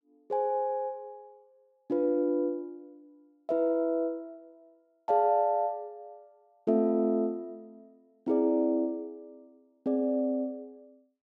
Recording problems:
none

